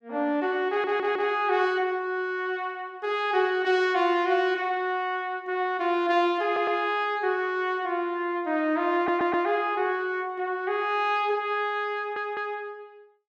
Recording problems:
stutter; 4 times, first at 0.5 s

